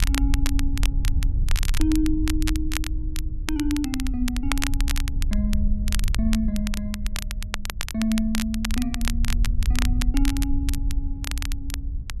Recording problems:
wind on the microphone; below 58 Hz, SNR -1 dB
crackle; vinyl, SNR 5 dB

